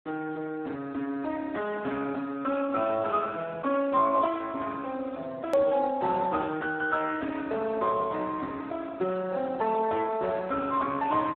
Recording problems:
phone line; 220 Hz to 2.6 kHz, Speex
hard cut with a click; at 5.5 s

